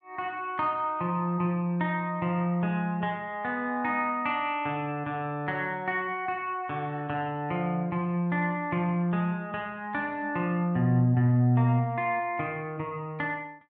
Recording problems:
treble missing; nothing above 5.7 kHz

